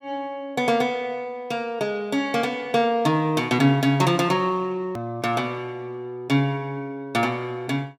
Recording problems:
click at an edit; at 5 s

